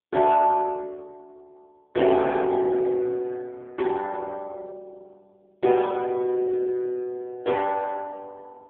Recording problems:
phone line; 150 Hz to 3.5 kHz, AMR-NB

